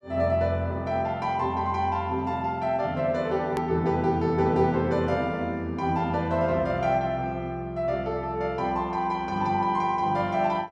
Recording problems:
hard cut with a click; at 3.5 s

